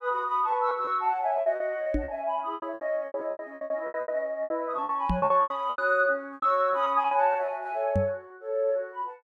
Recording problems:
lost packets; 16% of the sound replaced, filled with repeated pitch periods
microphone thump; at 2 s, at 5 s and at 8 s; peak +3 dB vs average level

